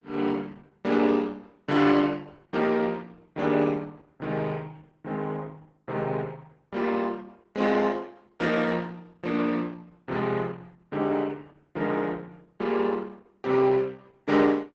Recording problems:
codec artefacts; Opus, log-spectral distance 4 dB, nothing above 7.8 kHz

